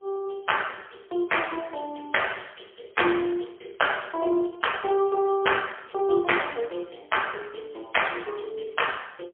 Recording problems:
telephone audio; 300 Hz to 3.3 kHz, AMR-NB, then MP3

